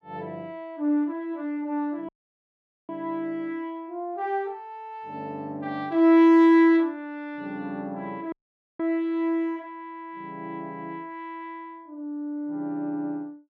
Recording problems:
audio cutting out; at 2 s for 1 s and at 8.5 s

